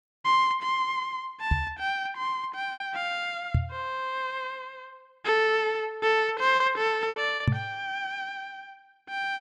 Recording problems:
packet loss; 3% of the sound replaced, filled with repeated pitch periods
microphone bump; at 1.5 s, at 3.5 s and at 7.5 s; peak +8 dB vs average level

